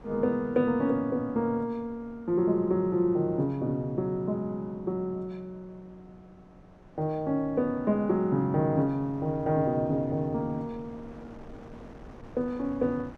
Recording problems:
wind noise; below 600 Hz, SNR 23 dB

